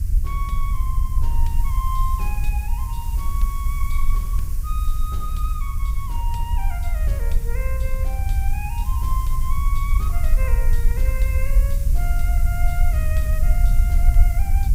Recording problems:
hiss; SNR 7 dB
rumble; below 58 Hz, SNR -11 dB

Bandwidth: 15.5 kHz